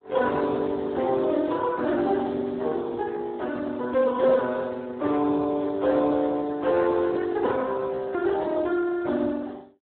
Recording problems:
telephone audio; 260 Hz to 2.1 kHz, Speex

